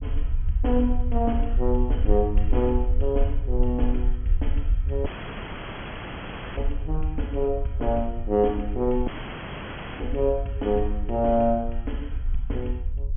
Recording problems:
low-pass filter; nothing above 3.3 kHz
rumble; below 60 Hz, SNR 2 dB
dropout; at 5 s for 1.5 s and at 9 s for 1 s

